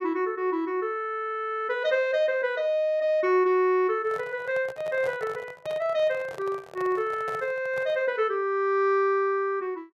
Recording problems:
microphone handling noise; from 4 to 8 s; peak -9 dB vs average level

